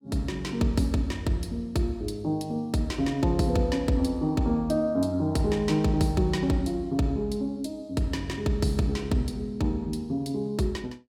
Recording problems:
none

